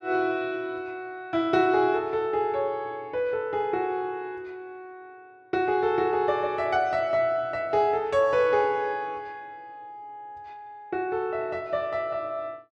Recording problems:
none

